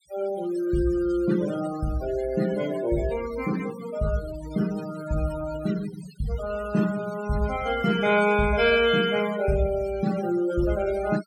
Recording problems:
denoising artefacts; signal-to-artefact ratio 15 dB

